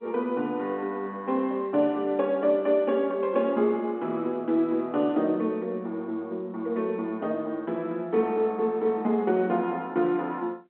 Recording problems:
phone line; 190 Hz to 3.4 kHz, G.711

